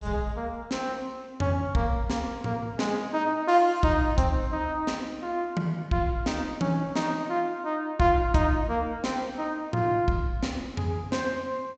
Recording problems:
treble cut off; nothing above 8 kHz

